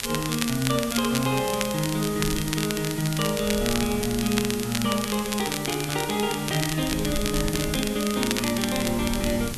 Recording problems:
hiss; slope 0 dB per octave, SNR 10 dB
wind noise; below 150 Hz, SNR 14 dB
crackling; vinyl, SNR 5 dB

